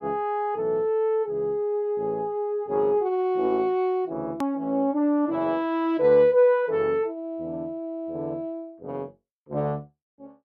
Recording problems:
edit click; at 4.5 s

